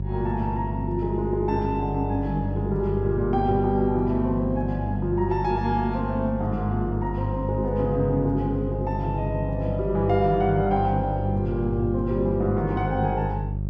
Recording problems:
hum; 50 Hz, harmonics up to 400 Hz, SNR 4 dB

